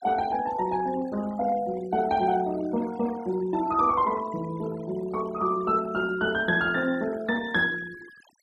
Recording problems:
noise reduction artefacts; signal-to-artefact ratio 19 dB

